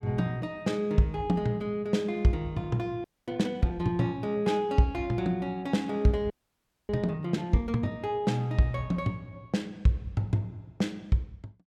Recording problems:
audio freezing; at 3 s and at 6.5 s for 0.5 s

